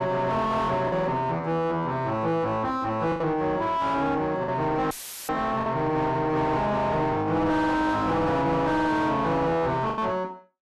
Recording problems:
distorted audio; soft clipping, signal-to-distortion ratio 5 dB
lost packets; 3% of the sound replaced, filled with the last packet
audio cutting out; at 5 s; filled with static

